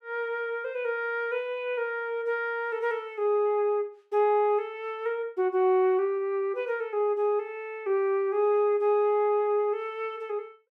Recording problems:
none

